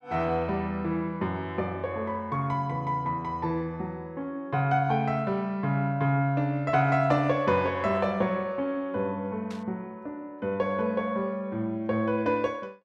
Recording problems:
static burst; at 9.5 s; peak -13 dB vs average level

